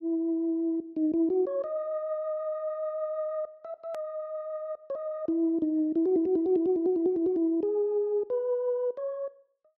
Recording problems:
hard cut with a click; at 4 s

